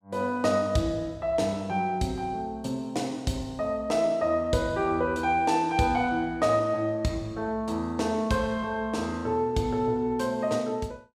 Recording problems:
none

